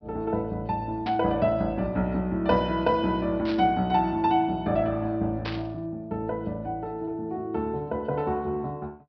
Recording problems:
treble missing; nothing above 5.5 kHz
burst of static; at 1 s, at 3.5 s and at 5.5 s; peak -4 dB vs average level

